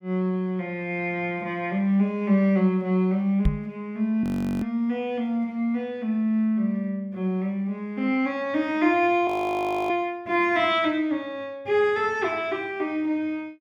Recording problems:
microphone thump; at 3.5 s; peak +5 dB vs average level
audio freezing; at 4 s and at 9.5 s for 0.5 s

